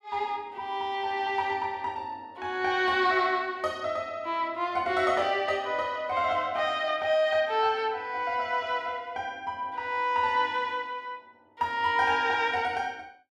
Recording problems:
none

